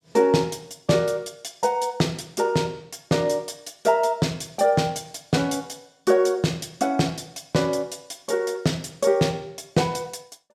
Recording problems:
none

